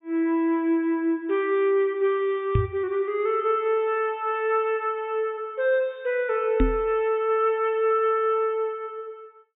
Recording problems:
low-pass filter; nothing above 4 kHz
microphone bump; at 2.5 s and at 6.5 s; peak +5 dB vs average level

